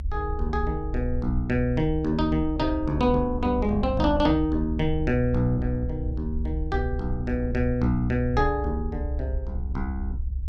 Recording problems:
low-frequency rumble; below 68 Hz, strongest tone 66 Hz, SNR 5 dB

